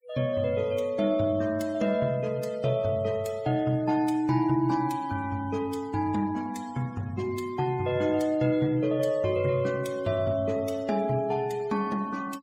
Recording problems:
noise reduction artefacts; signal-to-artefact ratio 22 dB

